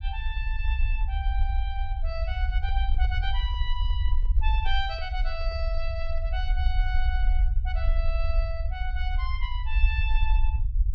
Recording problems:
treble cut off; nothing above 8 kHz
rumble; below 58 Hz, SNR -7 dB
microphone handling noise; from 2.5 to 6 s; peak -11 dB vs average level

